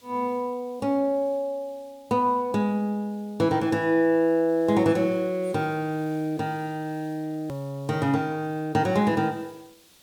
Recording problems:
background hiss; SNR 29 dB
edit click; at 7.5 s

